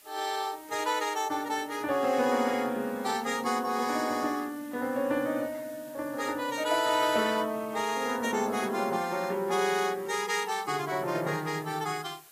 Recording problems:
codec artefacts; AAC, log-spectral distance 6 dB, nothing above 14.7 kHz
hiss; slope 0 dB per octave, SNR 21 dB

